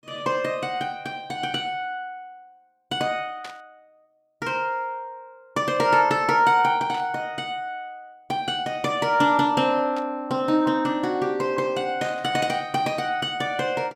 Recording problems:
burst of static; 4 times, first at 3.5 s; peak -10 dB vs average level

